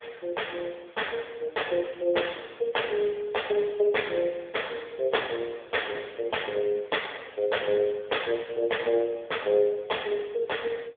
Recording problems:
phone line; 340 Hz to 3.6 kHz, AMR-NB

